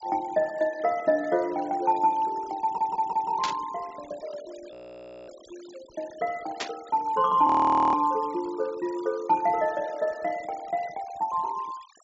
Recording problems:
treble cut off; nothing above 8 kHz
noise reduction artefacts; signal-to-artefact ratio 22 dB
audio stuttering; at 2.5 s
burst of static; at 3.5 s and at 6.5 s; peak 0 dB vs average level
frozen audio; at 4.5 s for 0.5 s and at 7.5 s

